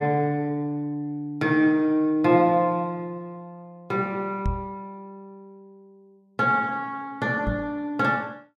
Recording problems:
microphone bump; at 4.5 s and at 7.5 s; peak 0 dB vs average level

